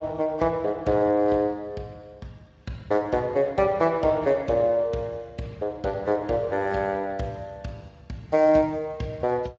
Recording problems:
lossy compression; AAC, then Speex, log-spectral distance 2 dB, nothing above 7.3 kHz

